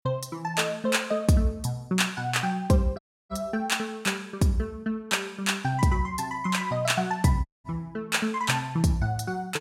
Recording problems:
audio cutting out; at 3 s and at 7.5 s

